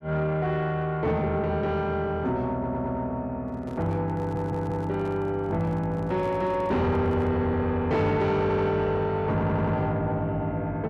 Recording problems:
distortion; soft clipping, signal-to-distortion ratio 11 dB
stutter; 4 times, first at 2.5 s
handling noise; from 3.5 to 7.5 s; peak -9 dB vs average level

